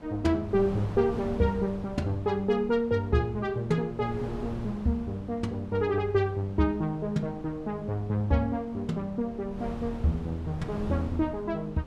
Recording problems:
wind on the microphone; below 360 Hz, SNR 13 dB

